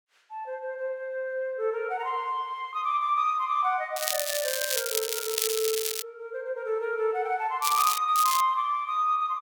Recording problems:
crackling; from 4 to 6 s, at 7.5 s and at 8 s; loose cable, SNR 1 dB

